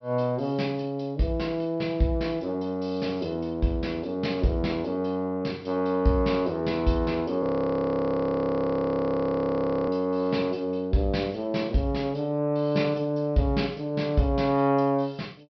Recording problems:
treble missing; nothing above 5.5 kHz
frozen audio; at 7.5 s for 2.5 s

